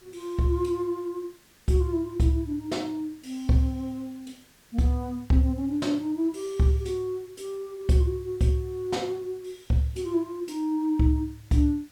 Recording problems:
background hiss; slope -1 dB per octave, SNR 29 dB

